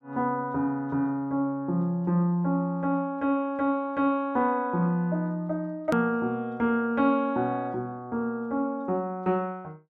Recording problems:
hard cut with a click; at 6 s

